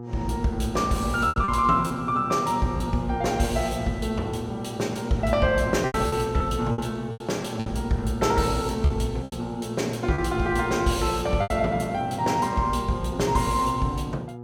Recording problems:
hum; 60 Hz, harmonics up to 1.2 kHz, SNR 13 dB
packet loss; 5% of the sound replaced, filled with repeated pitch periods

